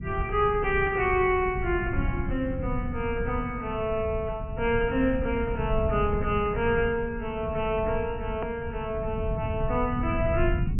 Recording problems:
low-pass filter; nothing above 3 kHz
low-frequency rumble; below 140 Hz, SNR 6 dB
edit click; at 8.5 s

